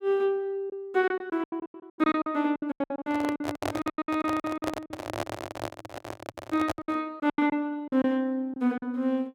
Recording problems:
lost packets; 19% of the sound replaced, filled with silence
handling noise; from 3 to 7 s; peak +1 dB vs average level

